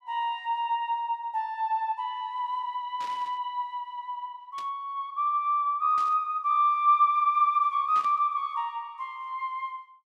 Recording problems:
burst of static; 4 times, first at 3 s; peak -13 dB vs average level

